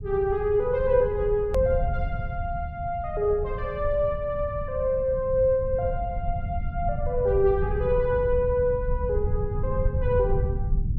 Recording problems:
rumble; below 100 Hz, SNR 6 dB
hard cut with a click; at 1.5 s

